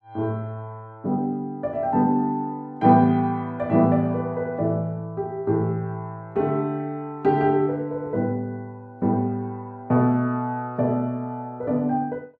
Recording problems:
none

